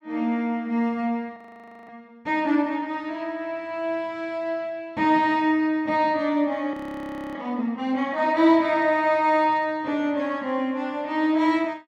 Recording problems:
audio freezing; at 1.5 s for 0.5 s and at 6.5 s for 0.5 s

